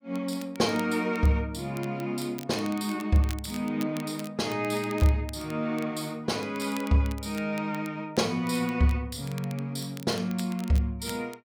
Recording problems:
crackling; vinyl, SNR 19 dB

